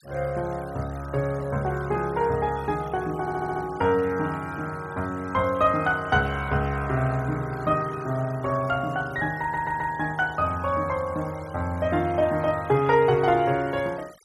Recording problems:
noise reduction artefacts; signal-to-artefact ratio 23 dB
audio stuttering; at 3 s and at 9.5 s

